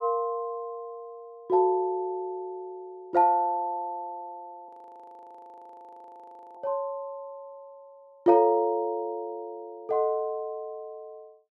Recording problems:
audio freezing; at 4.5 s for 2 s

